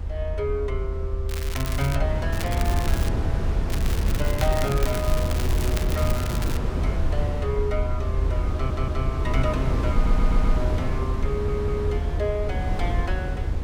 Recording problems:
low-frequency rumble; below 78 Hz, SNR -1 dB
wind noise; below 170 Hz, SNR -3 dB
crackle; at 1.5 s, at 2.5 s and from 3.5 to 6.5 s; loose cable, SNR 5 dB
stutter; at 8.5 s, at 10 s and at 11 s

